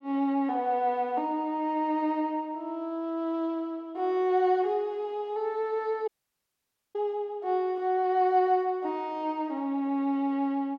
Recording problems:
audio cutting out; at 6 s for 1 s

